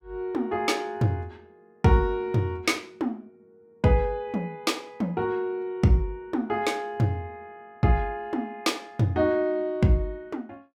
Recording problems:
none

